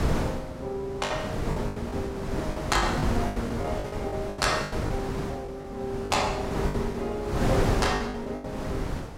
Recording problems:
wind on the microphone; below 570 Hz, SNR 0 dB
packet loss; 11% of the sound replaced, filled with the last packet

